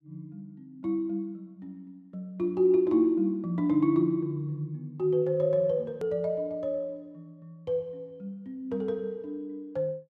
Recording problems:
hard cut with a click; at 6 s

